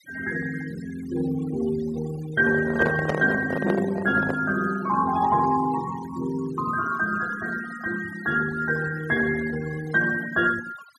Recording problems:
noise reduction artefacts; signal-to-artefact ratio 17 dB
handling noise; from 2.5 to 4.5 s; peak +2 dB vs average level

